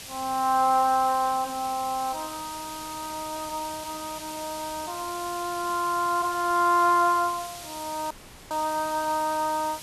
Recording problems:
hiss; slope 0 dB per octave, SNR 12 dB
audio cutting out; at 8 s

